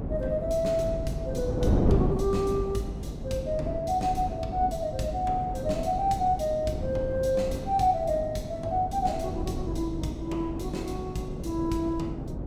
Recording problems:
hum; 50 Hz, harmonics up to 300 Hz, SNR 12 dB
wind on the microphone; below 310 Hz, SNR 5 dB

